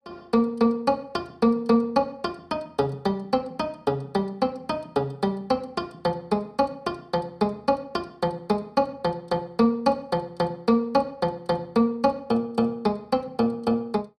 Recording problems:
none

